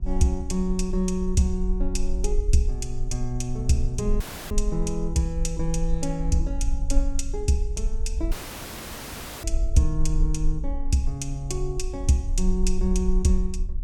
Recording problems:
hum; 60 Hz, harmonics up to 960 Hz, SNR 27 dB
rumble; below 44 Hz, strongest tone 18 Hz, SNR 3 dB
audio cutting out; at 4 s and at 8.5 s for 1 s

